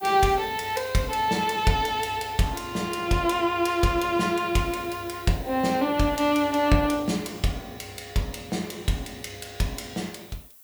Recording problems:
hiss; slope +1 dB per octave, SNR 21 dB

